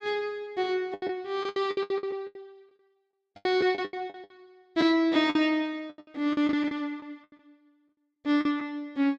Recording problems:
lost packets; 17% of the sound replaced, filled with the last packet

